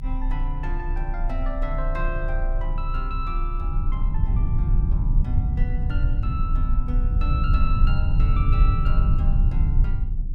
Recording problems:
low-frequency rumble; below 72 Hz, strongest tone 30 Hz, SNR -10 dB

